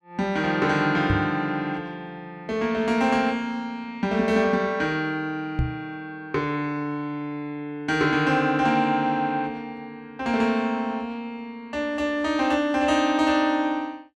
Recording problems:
microphone thump; at 1 s and at 5.5 s; peak +3 dB vs average level

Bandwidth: 13 kHz